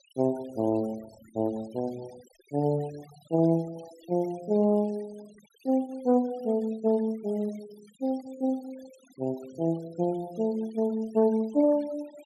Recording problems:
denoising artefacts; signal-to-artefact ratio 25 dB

